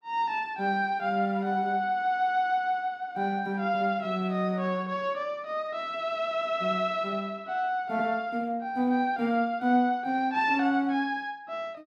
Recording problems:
none

